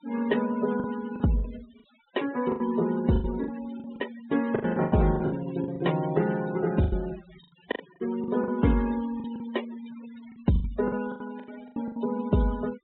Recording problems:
treble cut off; nothing above 3.7 kHz
denoising artefacts; signal-to-artefact ratio 17 dB
packet loss; 13% of the sound replaced, filled with the last packet

